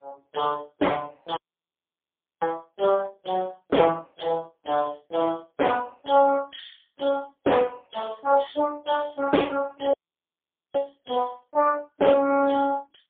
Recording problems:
phone line; 240 Hz to 2.7 kHz, AMR-NB, then MP3
audio cutting out; at 1.5 s for 1 s and at 10 s for 1 s

